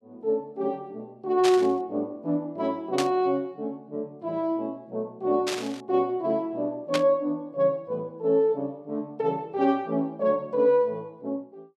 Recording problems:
burst of static; 4 times, first at 1.5 s; peak +2 dB vs average level

